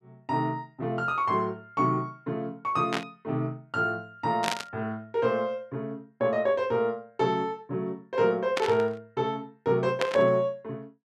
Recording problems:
burst of static; 4 times, first at 3 s; peak +3 dB vs average level

